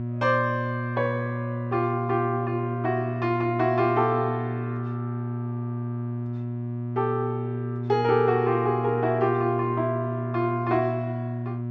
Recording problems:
hum; 60 Hz, harmonics up to 720 Hz, SNR 4 dB

